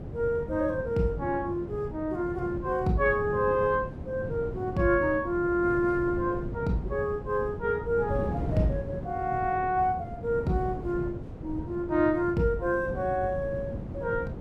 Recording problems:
wind on the microphone; below 300 Hz, SNR 9 dB

